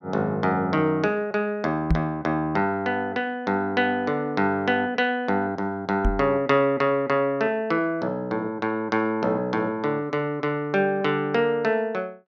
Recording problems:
microphone thump; at 2 s and at 6 s; peak +6 dB vs average level

